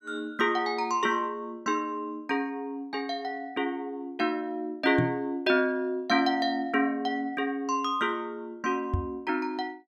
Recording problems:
microphone thump; at 5 s and at 9 s; peak +5 dB vs average level

